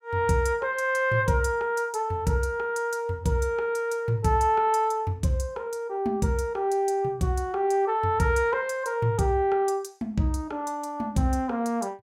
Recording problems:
none

